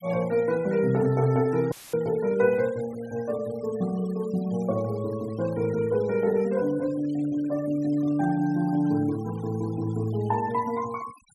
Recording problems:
denoising artefacts; signal-to-artefact ratio 22 dB
audio cutting out; at 1.5 s; filled with static

